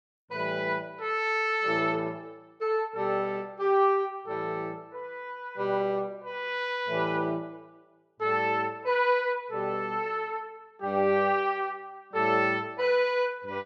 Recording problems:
none

